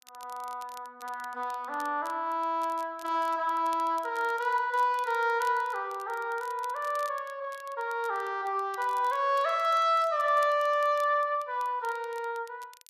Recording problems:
crackle; vinyl, SNR 24 dB

